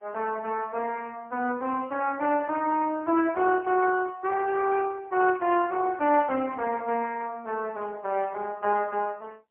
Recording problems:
telephone audio; 240 Hz to 3.1 kHz, AMR-NB, then MP3

